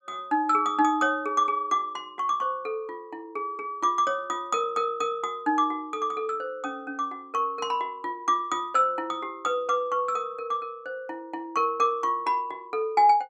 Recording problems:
none

